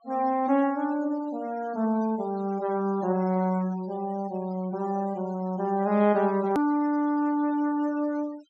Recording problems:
treble cut off; nothing above 8 kHz
denoising artefacts; signal-to-artefact ratio 23 dB
hard cut with a click; at 6.5 s

